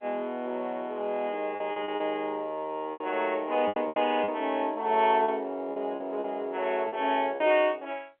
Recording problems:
telephone audio; 220 Hz to 3.4 kHz, G.711
packet loss; 8% of the sound replaced, filled with repeated pitch periods

